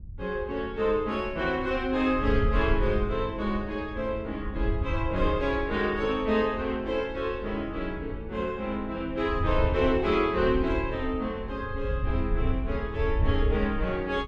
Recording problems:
wind on the microphone; below 84 Hz, SNR 6 dB

